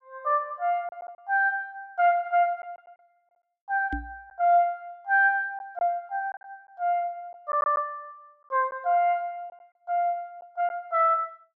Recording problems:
packet loss; 3% of the sound replaced, filled with silence
microphone bump; at 4 s; peak -4 dB vs average level

